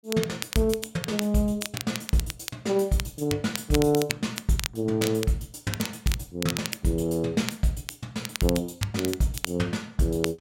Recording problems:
crackle; vinyl, SNR 8 dB

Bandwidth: 16 kHz